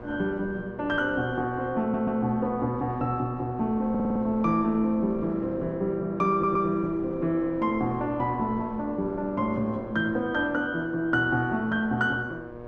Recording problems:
hum; 60 Hz, harmonics up to 1.8 kHz, SNR 16 dB
wind on the microphone; below 510 Hz, SNR 21 dB
stutter; at 2 s, at 4 s and at 6.5 s

